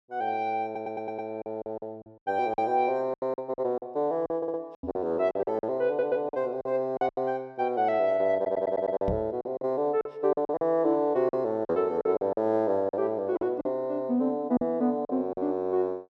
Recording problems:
packet loss; 11% of the sound replaced, filled with silence
stutter; 4 times, first at 0.5 s
microphone bump; at 5 s and at 9 s; peak +1 dB vs average level

